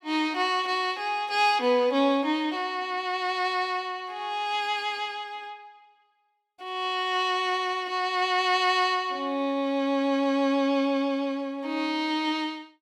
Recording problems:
none

